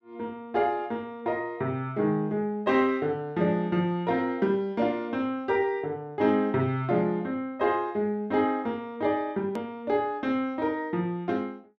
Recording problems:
click at an edit; at 9.5 s

